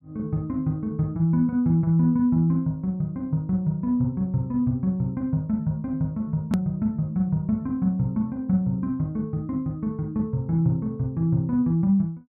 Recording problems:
edit click; at 6.5 s

